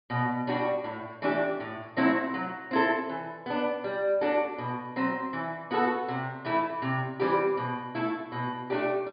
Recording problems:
low-pass filter; nothing above 5 kHz

